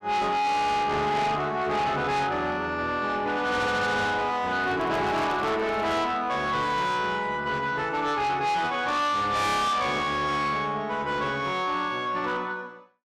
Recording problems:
distorted audio; soft clipping, signal-to-distortion ratio 7 dB
microphone handling noise; from 4.5 to 6 s; peak -7 dB vs average level

